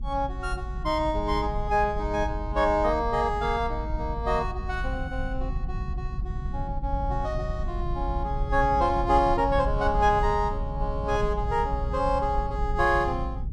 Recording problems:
low-frequency rumble; below 84 Hz, SNR 6 dB

